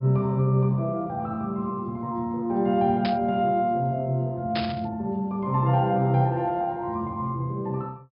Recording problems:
treble cut off; nothing above 5.5 kHz
static burst; at 3 s and at 4.5 s; peak -2 dB vs average level

